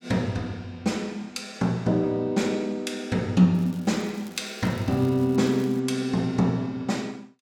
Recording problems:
crackling; from 3.5 to 6 s; loose cable, SNR 25 dB

